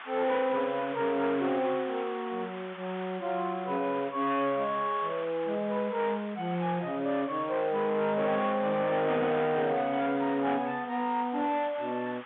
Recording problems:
phone line; 150 Hz to 3.7 kHz, G.711
distorted audio; hard clipping, signal-to-distortion ratio 11 dB
background hiss; SNR 15 dB

